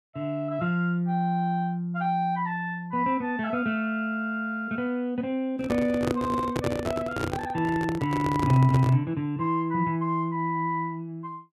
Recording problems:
handling noise; from 5.5 to 9 s; peak +3 dB vs average level

